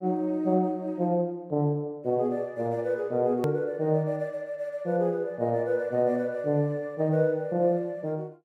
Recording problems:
edit click; at 3.5 s

